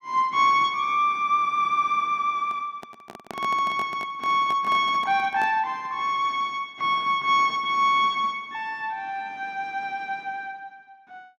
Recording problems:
handling noise; from 2.5 to 5.5 s; peak -8 dB vs average level

